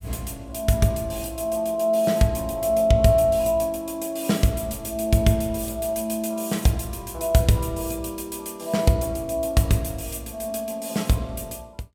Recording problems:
none

